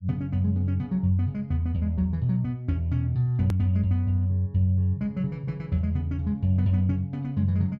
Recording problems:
edit click; at 3.5 s

